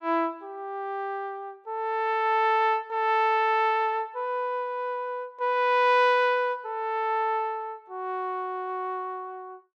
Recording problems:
none

